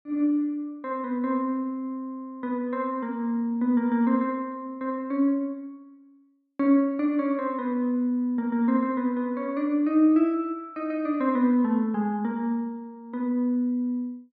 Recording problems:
none

